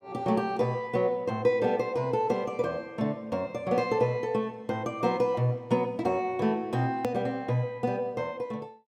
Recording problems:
click at an edit; at 7 s

